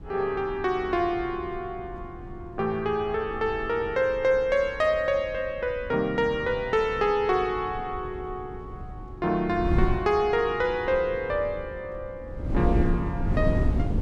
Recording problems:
wind on the microphone; below 170 Hz, SNR 8 dB

